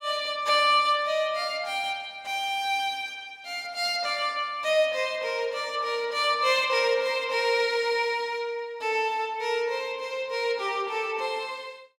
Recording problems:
none

